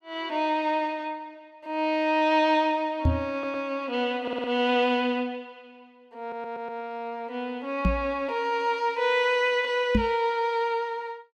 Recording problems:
knock on the microphone; at 3 s, at 8 s and at 10 s; peak +6 dB vs average level
audio stuttering; at 3.5 s, at 4 s and at 6 s

